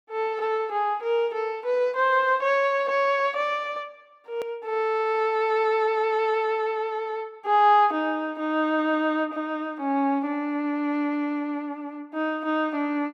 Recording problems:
edit click; at 4.5 s

